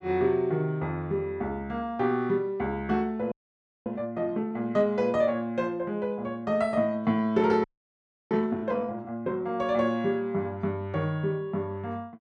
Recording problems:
audio freezing; at 3.5 s for 0.5 s and at 7.5 s for 0.5 s

